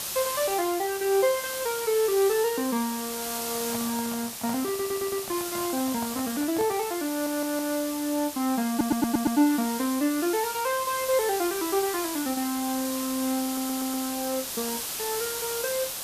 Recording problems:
hiss; slope 0 dB per octave, SNR 5 dB
microphone handling noise; from 3.5 to 7 s; peak -7 dB vs average level
stutter; 4 times, first at 4.5 s

